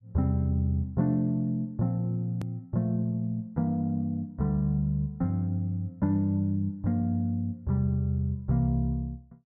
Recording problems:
click at an edit; at 2.5 s

